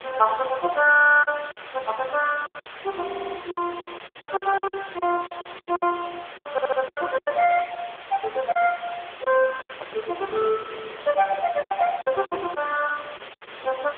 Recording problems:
phone line; 320 Hz to 2.3 kHz, AMR-NB
hiss; SNR 15 dB
packet loss; 12% of the sound replaced, filled with silence
stutter; at 1 s, at 3 s and at 6.5 s
handling noise; from 9.5 to 12 s; peak -8 dB vs average level

